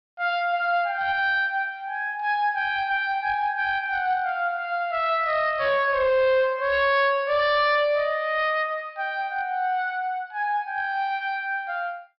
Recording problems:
treble cut off; nothing above 5.3 kHz
distortion; hard clipping, uneven, signal-to-distortion ratio 11 dB

